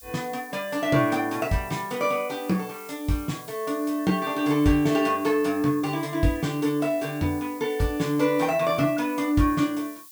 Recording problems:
hiss; SNR 19 dB

